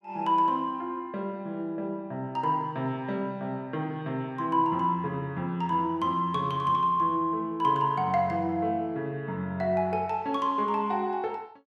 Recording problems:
none

